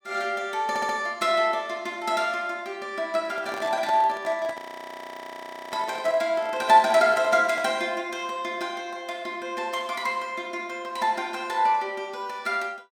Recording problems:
stutter; at 0.5 s
microphone handling noise; from 3 to 8 s; peak -6 dB vs average level
audio freezing; at 4.5 s for 1 s

